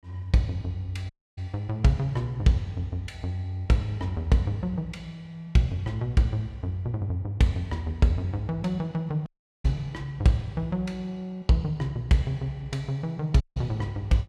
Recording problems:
dropout; at 1 s, at 9.5 s and at 13 s

